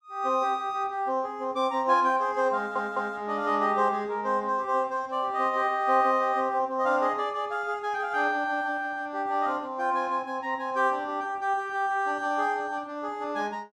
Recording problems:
stutter; at 2.5 s

